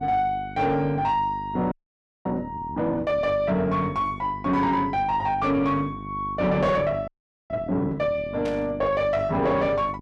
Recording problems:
distortion; soft clipping, signal-to-distortion ratio 11 dB
hum; 50 Hz, harmonics up to 850 Hz, SNR 14 dB
audio freezing; at 1.5 s for 0.5 s and at 7 s
static burst; at 8.5 s; peak -11 dB vs average level

